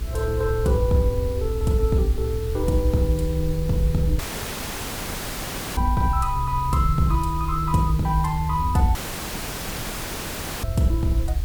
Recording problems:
electrical hum; 60 Hz, harmonics up to 480 Hz, SNR 18 dB
background hiss; slope -1 dB per octave, SNR 19 dB
low-frequency rumble; below 68 Hz, SNR 6 dB
audio cutting out; at 4 s for 1.5 s and at 9 s for 1.5 s

